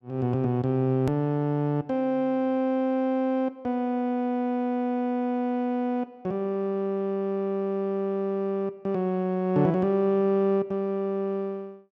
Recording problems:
click at an edit; at 1 s

